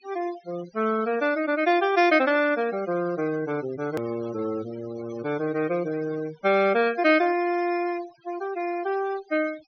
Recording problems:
treble cut off; nothing above 6.2 kHz
noise reduction artefacts; signal-to-artefact ratio 18 dB
click at an edit; at 4 s

